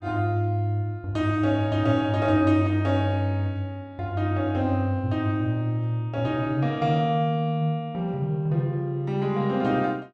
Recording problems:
none

